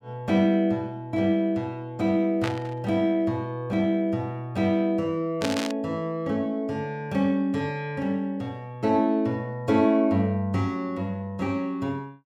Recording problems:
static burst; at 2.5 s and at 5.5 s; peak -1 dB vs average level

